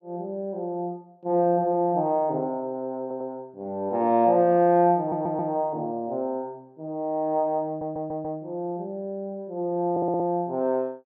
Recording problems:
stutter; 4 times, first at 3 s

